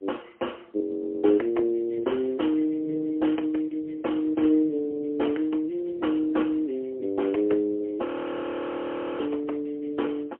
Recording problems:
phone line; 280 Hz to 3.1 kHz, AMR-NB, then MP3
frozen audio; at 1 s and at 8 s for 1 s

